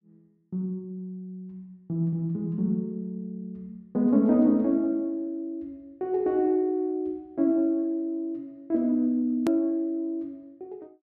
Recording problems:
hard cut with a click; at 9.5 s

